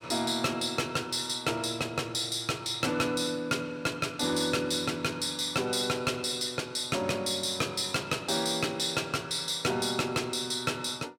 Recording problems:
distortion; soft clipping, signal-to-distortion ratio 11 dB

